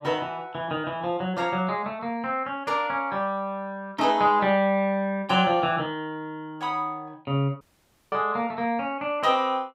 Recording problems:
audio cutting out; at 7.5 s for 0.5 s

